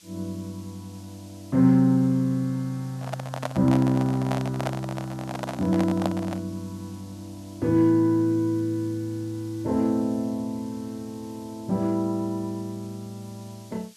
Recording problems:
hiss; SNR 26 dB
microphone handling noise; from 3 to 6.5 s; peak +1 dB vs average level

